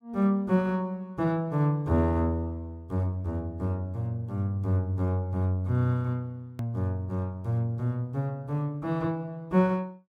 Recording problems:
hard cut with a click; at 6.5 s

